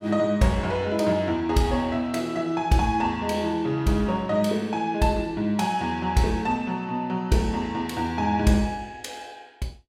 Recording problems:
none

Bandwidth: 16.5 kHz